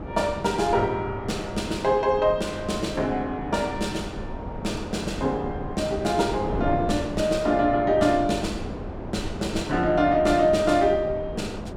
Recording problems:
wind noise; below 490 Hz, SNR 10 dB

